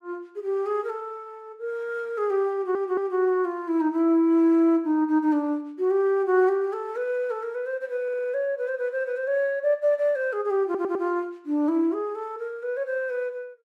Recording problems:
stutter; at 2.5 s, at 8 s and at 11 s

